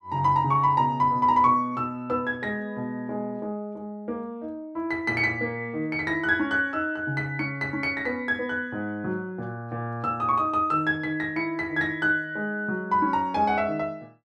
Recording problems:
none

